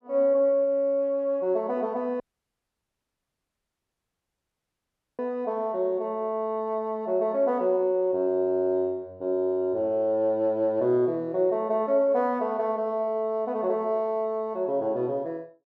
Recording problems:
dropout; at 2 s for 3 s

